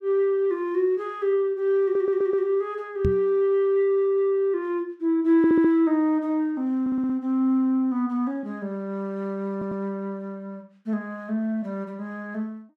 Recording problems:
audio stuttering; 4 times, first at 2 s
microphone thump; at 3 s; peak +3 dB vs average level

